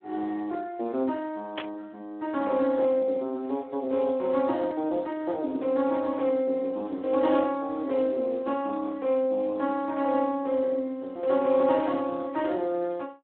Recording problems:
phone line; 220 Hz to 2.8 kHz, Speex
burst of static; at 1.5 s; peak -3 dB vs average level

